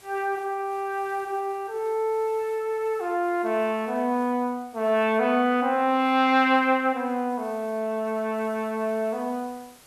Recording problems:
hiss; slope -1 dB per octave, SNR 28 dB

